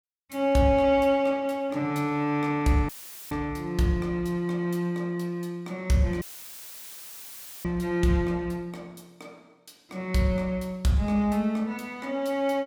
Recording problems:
audio cutting out; at 3 s and at 6 s for 1.5 s; filled with static

